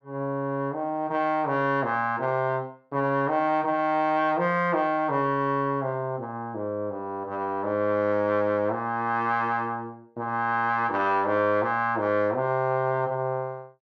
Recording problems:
none

